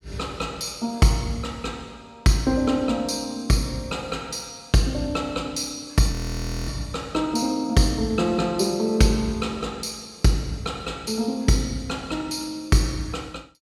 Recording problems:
frozen audio; at 6 s for 0.5 s

